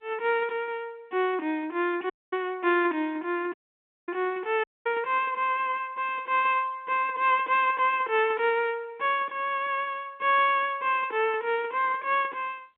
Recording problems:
telephone audio; 240 Hz to 3.6 kHz, G.711
dropout; at 2 s, at 3.5 s for 0.5 s and at 4.5 s

